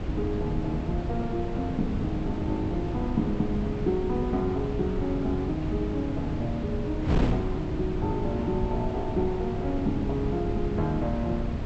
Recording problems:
treble missing; nothing above 7.9 kHz
wind noise; below 220 Hz, SNR 2 dB

